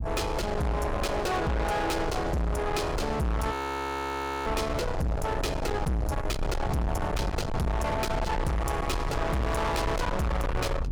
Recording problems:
distorted audio; soft clipping, signal-to-distortion ratio 6 dB
rumble; below 660 Hz, SNR 4 dB
frozen audio; at 3.5 s for 1 s

